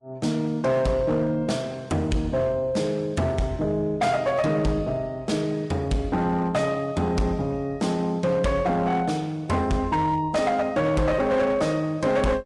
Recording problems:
lossy codec; Vorbis, log-spectral distance 2 dB, nothing above 10.7 kHz
distortion; hard clipping, signal-to-distortion ratio 12 dB

